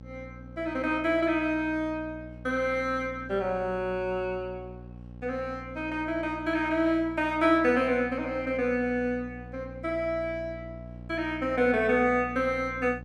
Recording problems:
electrical hum; 60 Hz, harmonics up to 840 Hz, SNR 16 dB

